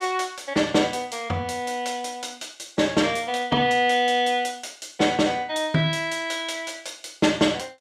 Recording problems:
none

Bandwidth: 14.5 kHz